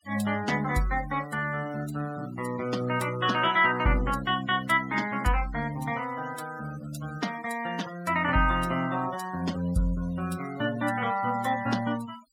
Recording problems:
noise reduction artefacts; signal-to-artefact ratio 18 dB

